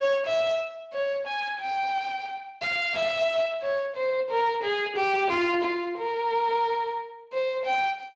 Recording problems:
lossy codec; Speex, log-spectral distance 3 dB
distorted audio; soft clipping, signal-to-distortion ratio 4 dB

